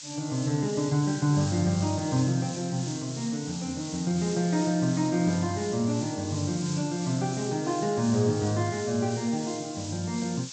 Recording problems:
treble cut off; nothing above 8 kHz
hiss; SNR 11 dB

